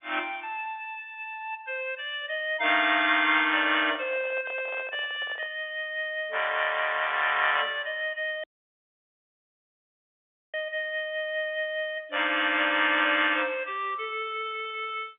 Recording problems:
telephone audio; 260 Hz to 3.6 kHz, G.711
handling noise; from 3.5 to 5.5 s; peak -11 dB vs average level
dropout; at 8.5 s for 2 s

